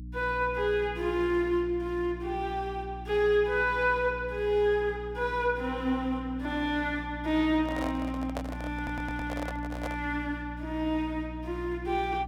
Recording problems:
mains hum; 60 Hz, harmonics up to 300 Hz, SNR 11 dB
handling noise; from 7.5 to 10 s; peak -2 dB vs average level
stutter; at 9 s

